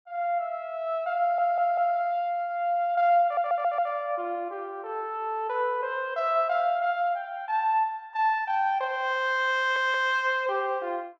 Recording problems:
audio stuttering; at 1 s, at 3 s and at 9.5 s

